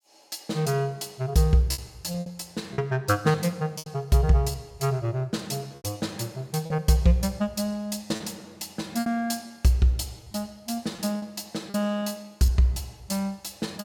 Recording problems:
lost packets; 7% of the sound replaced, filled with repeated pitch periods

